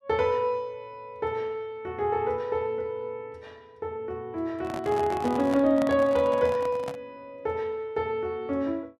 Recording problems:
microphone handling noise; from 4.5 to 7 s; peak -3 dB vs average level

